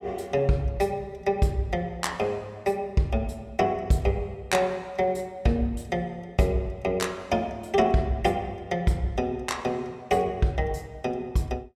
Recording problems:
none

